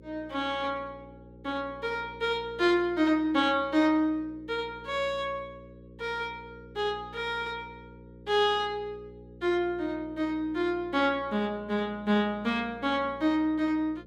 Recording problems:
hum; 60 Hz, harmonics up to 540 Hz, SNR 21 dB

